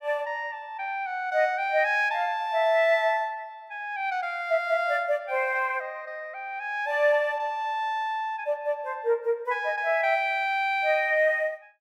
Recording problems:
none

